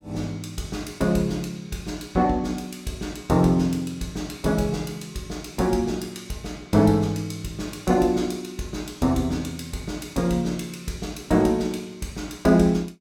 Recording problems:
none

